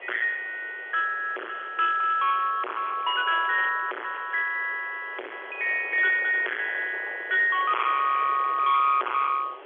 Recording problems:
telephone audio; 300 Hz to 3.6 kHz, G.711
distorted audio; hard clipping, uneven, signal-to-distortion ratio 3 dB
background hiss; SNR 26 dB
wind noise; below 1.3 kHz, SNR 20 dB

